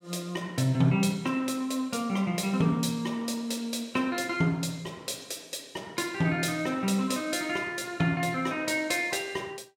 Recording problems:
none

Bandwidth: 17 kHz